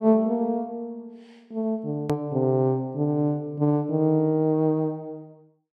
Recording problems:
edit click; at 2 s

